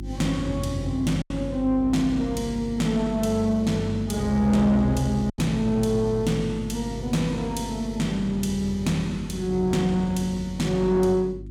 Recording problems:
distortion; soft clipping, signal-to-distortion ratio 12 dB
mains hum; 50 Hz, harmonics up to 350 Hz, SNR 13 dB
packet loss; 1.4% of the sound replaced, filled with silence

